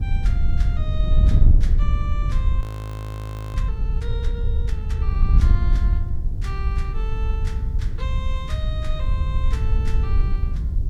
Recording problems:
background hiss; slope +6 dB per octave, SNR 28 dB
wind on the microphone; below 72 Hz, SNR -15 dB
audio freezing; at 2.5 s for 1 s

